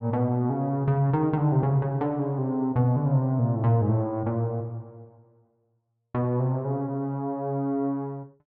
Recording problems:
none

